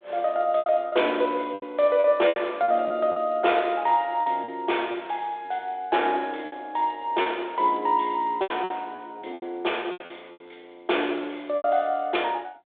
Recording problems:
phone line; 260 Hz to 3.6 kHz, G.726
lost packets; 10% of the sound replaced, filled with repeated pitch periods

